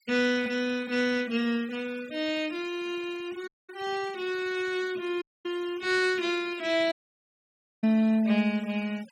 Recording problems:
noise reduction artefacts; signal-to-artefact ratio 21 dB
dropout; at 3.5 s, at 5 s and at 7 s for 1 s

